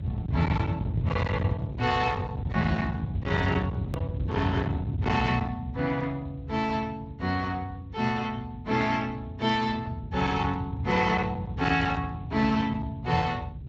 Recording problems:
lossy codec; Speex, log-spectral distance 2 dB
distortion; hard clipping, uneven, signal-to-distortion ratio 11 dB
low-frequency rumble; below 180 Hz, SNR 5 dB
click at an edit; at 4 s

